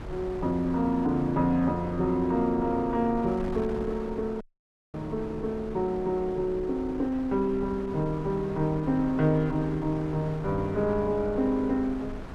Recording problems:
wind noise; below 480 Hz, SNR 14 dB
audio cutting out; at 4.5 s for 0.5 s

